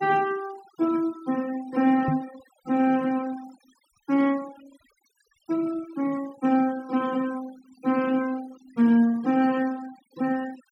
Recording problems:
denoising artefacts; signal-to-artefact ratio 21 dB
microphone thump; at 2 s; peak +4 dB vs average level

